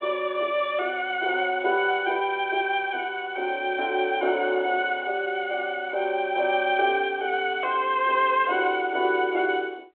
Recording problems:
telephone audio; 300 Hz to 3.6 kHz, G.726

